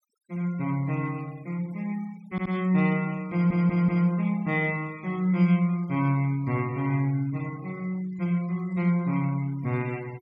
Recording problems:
noise reduction artefacts; signal-to-artefact ratio 24 dB
stutter; at 2.5 s and at 3.5 s

